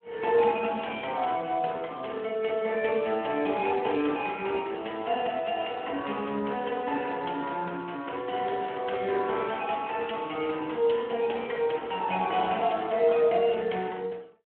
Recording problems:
telephone audio; 260 Hz to 3.7 kHz, Speex

